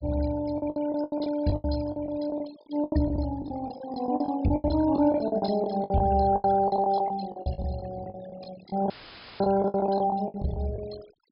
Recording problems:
treble missing; nothing above 5.5 kHz
denoising artefacts; signal-to-artefact ratio 15 dB
lost packets; 18% of the sound replaced, filled with the last packet
audio cutting out; at 9 s for 0.5 s; filled with static

